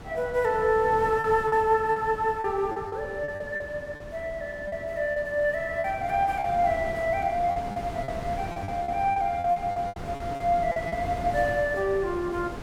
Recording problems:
wind on the microphone; below 650 Hz, SNR 12 dB
lost packets; 10% of the sound replaced, filled with repeated pitch periods

